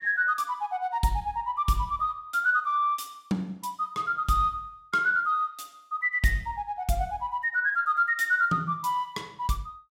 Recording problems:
none

